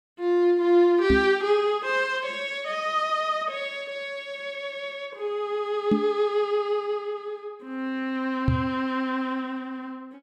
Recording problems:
microphone bump; at 1 s, at 6 s and at 8.5 s; peak +6 dB vs average level

